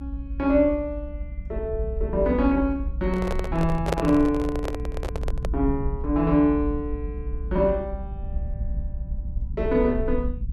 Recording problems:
rumble; below 64 Hz, SNR 7 dB
handling noise; from 3 to 5.5 s; peak +3 dB vs average level

